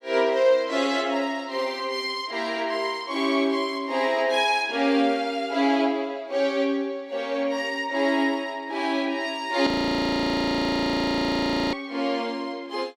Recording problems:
audio freezing; at 9.5 s for 2 s

